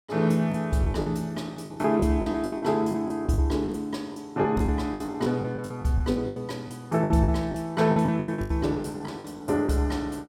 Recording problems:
lost packets; 15% of the sound replaced, filled with the last packet

